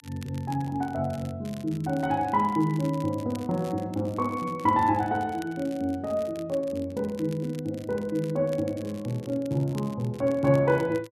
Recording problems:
crackle; vinyl, SNR 23 dB

